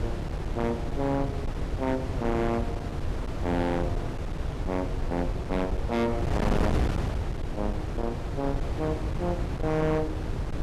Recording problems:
distortion; hard clipping, uneven, signal-to-distortion ratio 6 dB
wind on the microphone; below 260 Hz, SNR 2 dB

